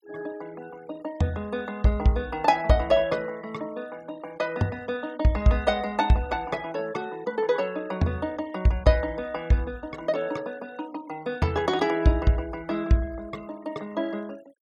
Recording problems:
denoising artefacts; signal-to-artefact ratio 24 dB

